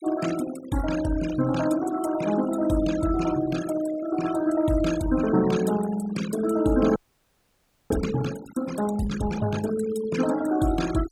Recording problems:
noise reduction artefacts; signal-to-artefact ratio 13 dB
frozen audio; at 7 s for 1 s

